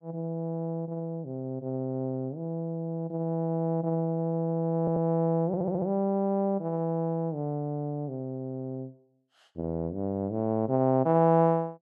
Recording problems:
audio stuttering; at 5 s and at 5.5 s

